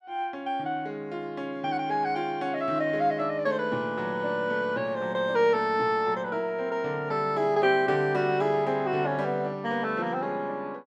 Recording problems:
none

